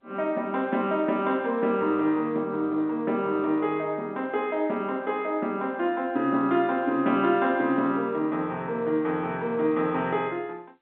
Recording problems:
phone line; 170 Hz to 3.8 kHz, G.711

